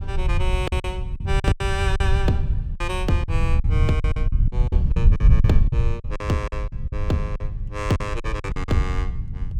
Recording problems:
low-frequency rumble; below 90 Hz, SNR -3 dB
packet loss; 13% of the sound replaced, filled with silence

